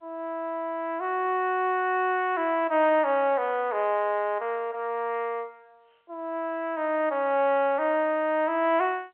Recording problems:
telephone audio; 280 Hz to 3.3 kHz, G.711

